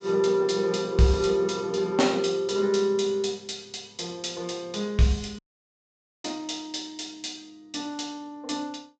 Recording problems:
treble cut off; nothing above 8 kHz
audio cutting out; at 5.5 s for 1 s

